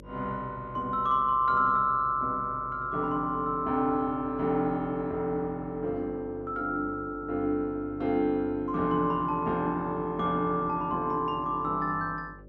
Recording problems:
hum; 50 Hz, harmonics up to 600 Hz, SNR 22 dB

